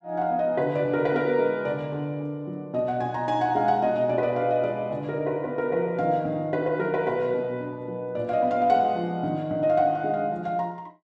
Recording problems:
none

